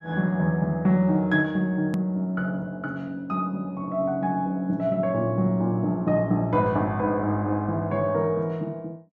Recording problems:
hard cut with a click; at 2 s

